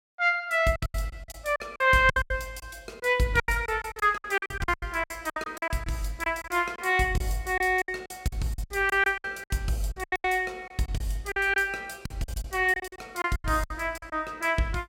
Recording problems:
lost packets; 17% of the sound replaced, filled with silence

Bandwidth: 16.5 kHz